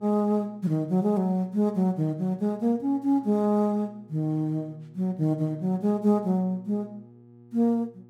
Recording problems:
hum; 60 Hz, harmonics up to 840 Hz, SNR 26 dB

